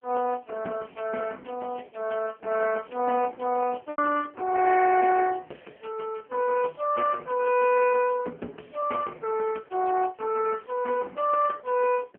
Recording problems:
telephone audio; 260 Hz to 2.8 kHz, AMR-NB
lost packets; 0.8% of the sound replaced, filled with repeated pitch periods

